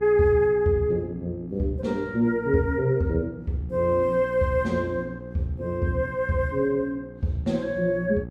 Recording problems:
electrical hum; 60 Hz, harmonics up to 840 Hz, SNR 16 dB

